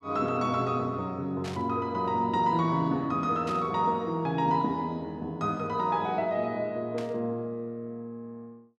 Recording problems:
static burst; at 1.5 s, at 3.5 s and at 7 s; peak -9 dB vs average level

